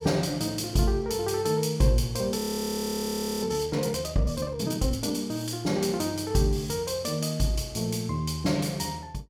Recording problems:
frozen audio; at 2.5 s for 1 s

